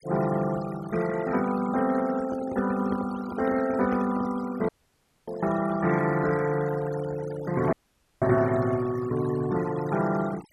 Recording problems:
noise reduction artefacts; signal-to-artefact ratio 14 dB
microphone handling noise; from 2 to 4.5 s; peak -4 dB vs average level
dropout; at 4.5 s for 0.5 s and at 7.5 s

